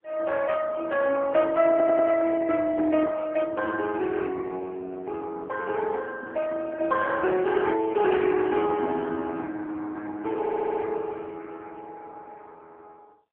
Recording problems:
telephone audio; 220 Hz to 2.6 kHz, AMR-NB
audio stuttering; at 1.5 s and at 10 s

